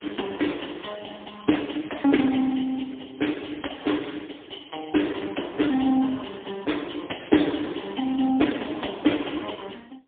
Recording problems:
phone line; 220 Hz to 3.5 kHz, AMR-NB, then MP3

